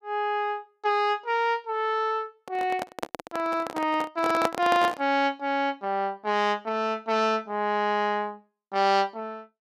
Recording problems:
microphone handling noise; from 2.5 to 5 s; peak +4 dB vs average level

